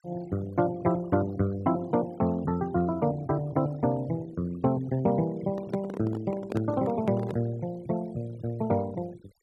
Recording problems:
noise reduction artefacts; signal-to-artefact ratio 21 dB
handling noise; from 5.5 to 7.5 s; peak -2 dB vs average level

